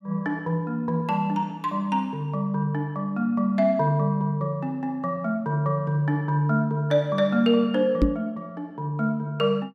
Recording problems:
microphone thump; at 8 s; peak +8 dB vs average level

